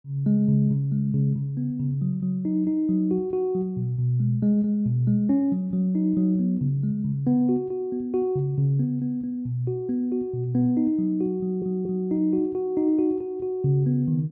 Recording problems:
stutter; at 11 s

